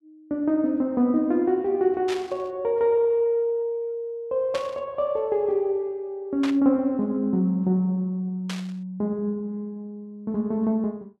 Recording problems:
static burst; 4 times, first at 2 s; peak -5 dB vs average level

